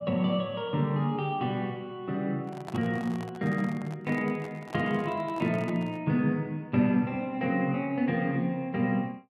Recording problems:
microphone handling noise; from 2.5 to 6 s; peak -7 dB vs average level

